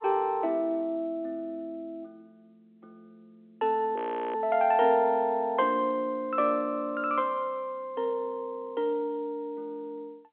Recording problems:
phone line; 260 Hz to 3.4 kHz, G.711
frozen audio; at 4 s

